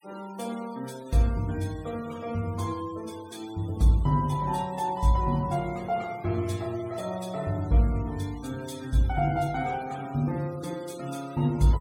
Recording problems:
denoising artefacts; signal-to-artefact ratio 21 dB

